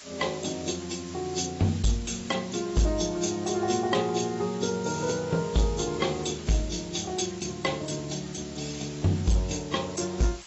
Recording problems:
lossy compression; AAC, log-spectral distance 14 dB, nothing above 7.8 kHz
distortion; hard clipping, signal-to-distortion ratio 11 dB
background hiss; slope +1 dB per octave, SNR 15 dB

